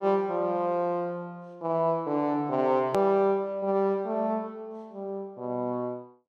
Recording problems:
click at an edit; at 3 s

